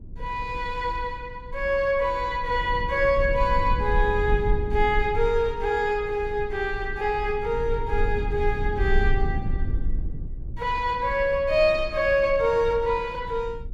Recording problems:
rumble; below 60 Hz, SNR 8 dB

